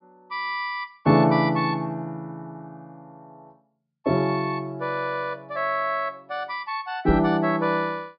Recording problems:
treble cut off; nothing above 5.5 kHz
microphone bump; at 7 s; peak +2 dB vs average level

